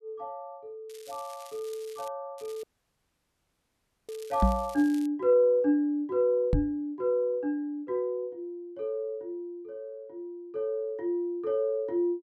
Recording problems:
crackling; from 1 to 2 s and from 2.5 to 5 s; loose cable, SNR 22 dB
audio cutting out; at 2.5 s for 1.5 s
microphone thump; at 4.5 s and at 6.5 s; peak +8 dB vs average level

